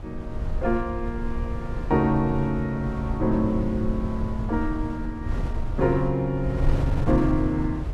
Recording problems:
wind on the microphone; below 110 Hz, SNR 5 dB

